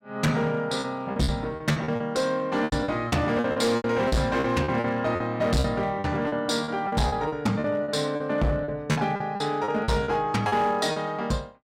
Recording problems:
distortion; hard clipping, signal-to-distortion ratio 7 dB
lost packets; 14% of the sound replaced, filled with repeated pitch periods

